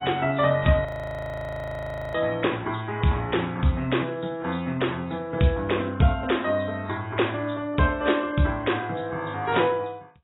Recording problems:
codec artefacts; AAC, log-spectral distance 4 dB, nothing above 3.8 kHz
audio freezing; at 1 s for 1.5 s

